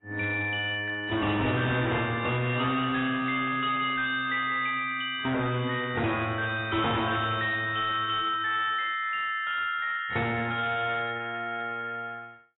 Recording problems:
lossy compression; AAC, log-spectral distance 4 dB, nothing above 3.3 kHz
distorted audio; hard clipping, signal-to-distortion ratio 10 dB

